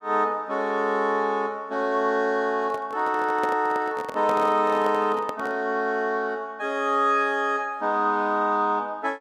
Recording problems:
handling noise; from 2.5 to 5.5 s; peak -4 dB vs average level

